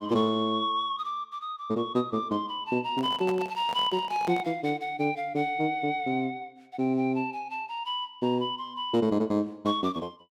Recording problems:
handling noise; from 3 to 4.5 s; peak -5 dB vs average level

